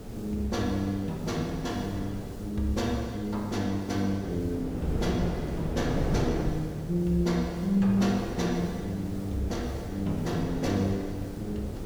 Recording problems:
background hiss; SNR 23 dB
wind noise; below 400 Hz, SNR 7 dB

